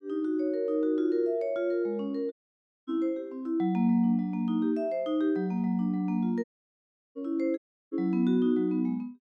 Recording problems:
dropout; at 2.5 s for 0.5 s, at 6.5 s for 0.5 s and at 7.5 s

